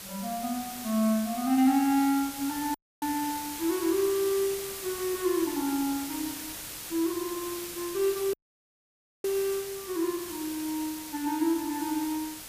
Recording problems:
background hiss; slope 0 dB per octave, SNR 8 dB
audio cutting out; at 2.5 s and at 8.5 s for 1 s

